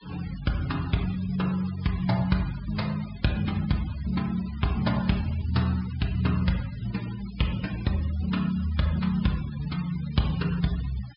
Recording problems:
low-pass filter; nothing above 5.5 kHz
denoising artefacts; signal-to-artefact ratio 17 dB

